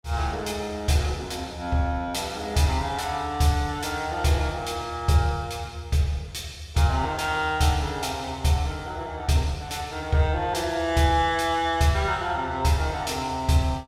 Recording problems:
none

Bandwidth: 16 kHz